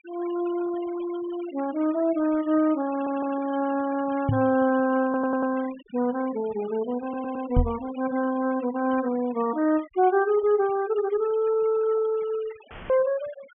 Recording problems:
low-pass filter; nothing above 3.3 kHz
noise reduction artefacts; signal-to-artefact ratio 20 dB
audio stuttering; at 3 s, at 5 s and at 7 s
knock on the microphone; at 4.5 s and at 7.5 s; peak +6 dB vs average level
audio cutting out; at 13 s; filled with static

